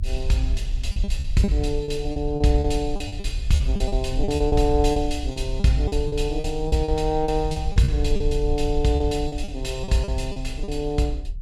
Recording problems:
rumble; below 58 Hz, SNR 6 dB
lost packets; 13% of the sound replaced, filled with repeated pitch periods

